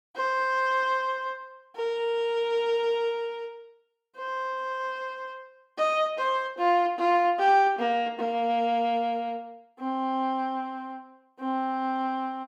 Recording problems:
none

